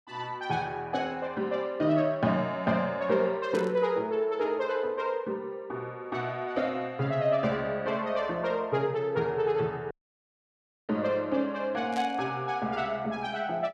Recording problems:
static burst; at 3.5 s and at 12 s; peak -7 dB vs average level
audio cutting out; at 10 s for 1 s

